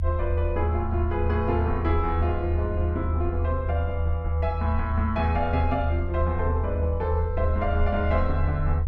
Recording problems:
rumble; below 82 Hz, strongest tone 80 Hz, SNR -1 dB

